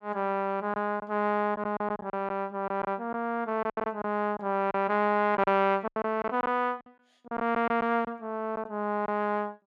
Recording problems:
lost packets; 9% of the sound replaced, filled with silence

